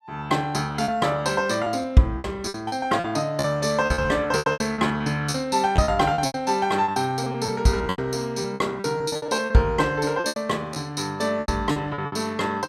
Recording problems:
lost packets; 15% of the sound replaced, filled with repeated pitch periods

